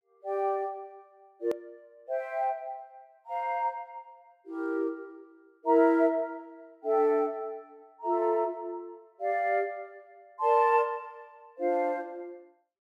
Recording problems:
click at an edit; at 1.5 s

